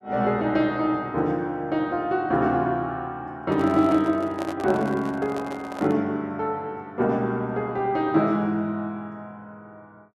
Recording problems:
microphone handling noise; from 3.5 to 6 s; peak -5 dB vs average level

